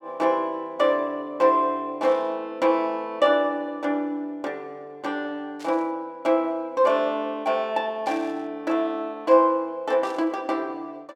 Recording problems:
burst of static; 4 times, first at 2 s; peak -14 dB vs average level

